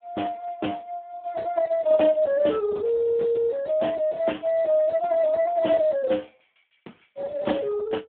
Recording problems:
telephone audio; 220 Hz to 3.5 kHz, Speex

